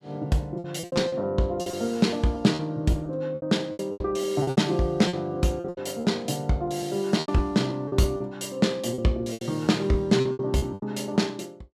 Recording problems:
packet loss; 13% of the sound replaced, filled with repeated pitch periods

